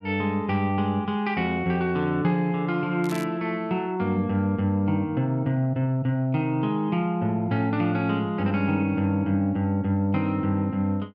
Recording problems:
crackle; at 3 s; loose cable, SNR 19 dB

